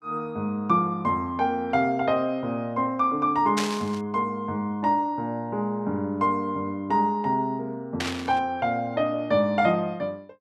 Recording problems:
burst of static; at 3.5 s and at 8 s; peak +1 dB vs average level

